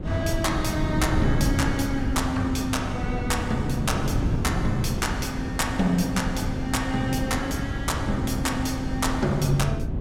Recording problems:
wind on the microphone; below 230 Hz, SNR 2 dB

